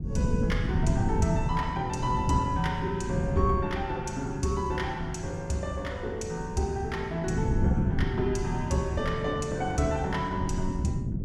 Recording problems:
wind on the microphone; below 190 Hz, SNR 2 dB

